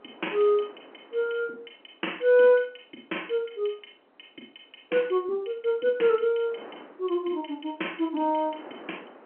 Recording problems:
telephone audio; 240 Hz to 3.2 kHz, G.711
wind on the microphone; below 1.1 kHz, SNR 25 dB

